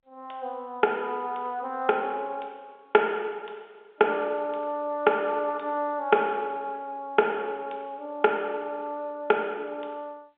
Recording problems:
phone line; 190 Hz to 3.4 kHz, G.711

